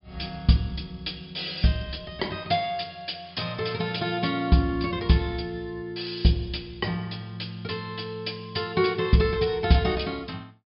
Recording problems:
treble missing; nothing above 5.5 kHz

